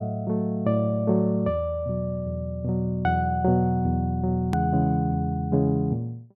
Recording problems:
click at an edit; at 4.5 s

